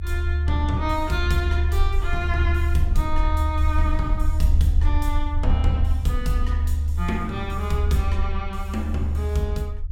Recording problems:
low-frequency rumble; below 76 Hz, SNR -4 dB

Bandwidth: 16.5 kHz